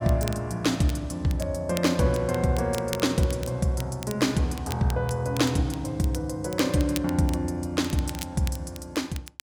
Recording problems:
crackle; vinyl, SNR 15 dB

